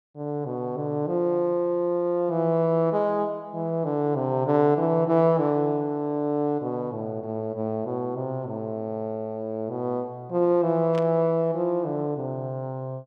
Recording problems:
burst of static; at 11 s; peak -10 dB vs average level

